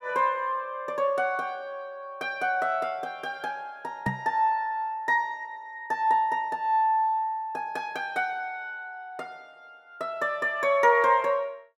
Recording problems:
microphone bump; at 4 s; peak 0 dB vs average level

